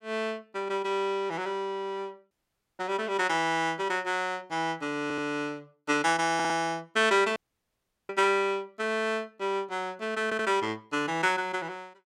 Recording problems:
dropout; at 2.5 s and at 7.5 s for 0.5 s
stutter; at 5 s, at 6.5 s and at 10 s

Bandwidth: 16 kHz